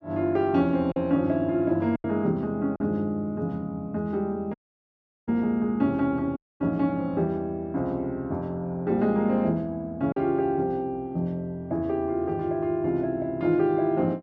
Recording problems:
lost packets; 1.5% of the sound replaced, filled with silence
dropout; at 4.5 s for 0.5 s and at 6.5 s

